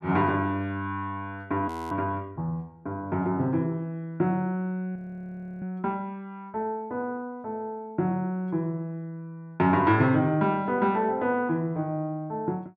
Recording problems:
frozen audio; at 1.5 s and at 5 s for 0.5 s

